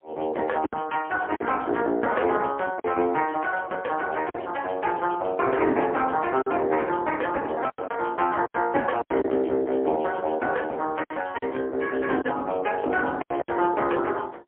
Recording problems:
phone line; 240 Hz to 3.2 kHz, AMR-NB, then MP3
lost packets; 5% of the sound replaced, filled with silence

